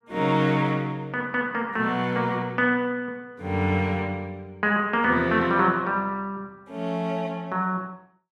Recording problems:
none

